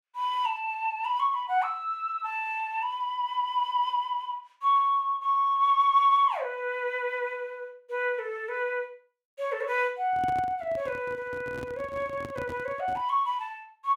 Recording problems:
handling noise; from 10 to 13 s; peak -7 dB vs average level

